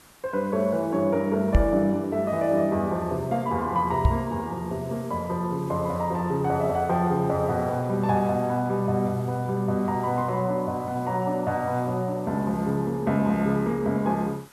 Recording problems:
background hiss; SNR 25 dB
knock on the microphone; at 1.5 s and at 4 s; peak +9 dB vs average level

